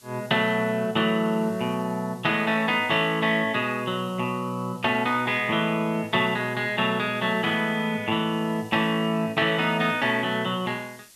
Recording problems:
hiss; slope +2 dB per octave, SNR 26 dB

